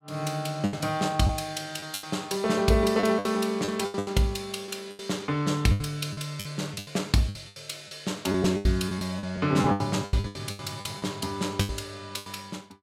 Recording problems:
lost packets; 15% of the sound replaced, filled with the last packet

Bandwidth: 16 kHz